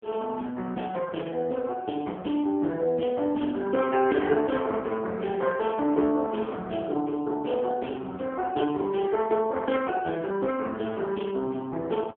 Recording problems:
telephone audio; 190 Hz to 3.3 kHz, AMR-NB

